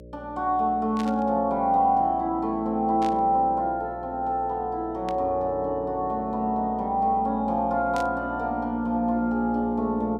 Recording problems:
hum; 60 Hz, harmonics up to 600 Hz, SNR 18 dB
static burst; 4 times, first at 1 s; peak -10 dB vs average level

